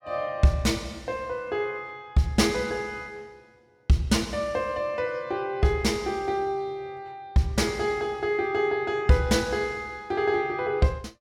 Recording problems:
none

